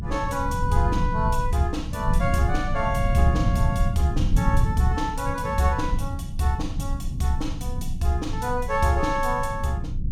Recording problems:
low-frequency rumble; below 120 Hz, SNR 2 dB

